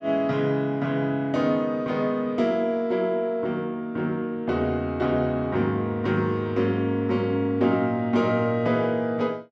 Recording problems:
none

